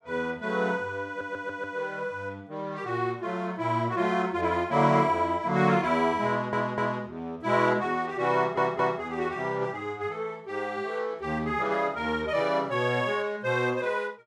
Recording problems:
stutter; at 1 s, at 6.5 s and at 8.5 s

